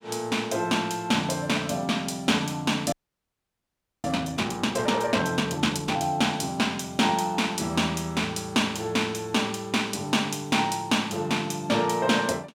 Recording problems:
audio freezing; at 3 s for 1 s

